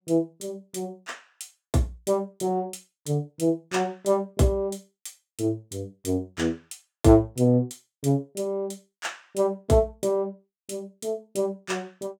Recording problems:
none

